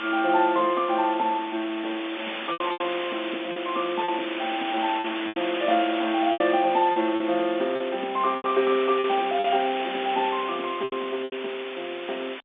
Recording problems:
telephone audio; 220 Hz to 3.6 kHz, G.711
background hiss; SNR 8 dB
packet loss; 7% of the sound replaced, filled with repeated pitch periods

